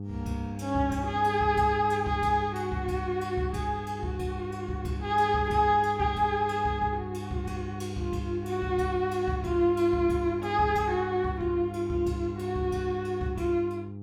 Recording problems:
hum; 50 Hz, harmonics up to 800 Hz, SNR 10 dB

